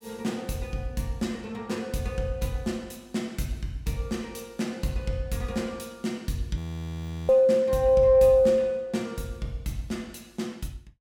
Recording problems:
audio freezing; at 6.5 s for 0.5 s

